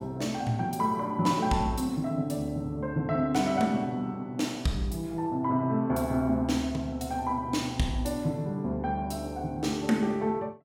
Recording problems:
none

